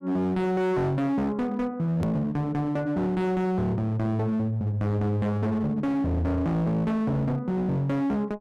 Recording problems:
distortion; hard clipping, signal-to-distortion ratio 6 dB
edit click; at 2 s

